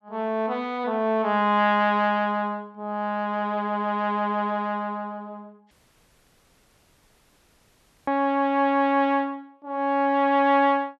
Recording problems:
dropout; at 5.5 s for 2.5 s

